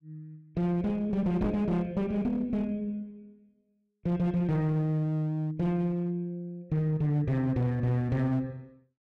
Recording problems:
distorted audio; hard clipping, uneven, signal-to-distortion ratio 10 dB
knock on the microphone; at 1.5 s; peak 0 dB vs average level

